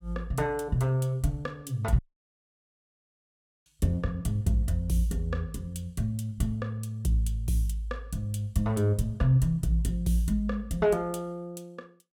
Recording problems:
audio cutting out; at 2 s for 1.5 s

